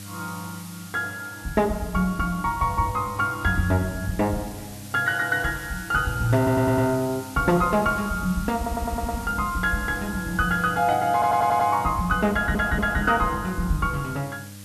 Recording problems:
hum; 50 Hz, harmonics up to 800 Hz, SNR 19 dB
background hiss; slope +4 dB per octave, SNR 18 dB
stutter; 4 times, first at 6.5 s

